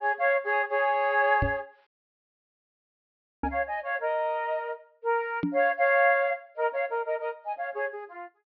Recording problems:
low-pass filter; nothing above 5.5 kHz
microphone thump; at 1.5 s, at 3.5 s and at 5.5 s; peak +2 dB vs average level
dropout; at 2 s for 1.5 s

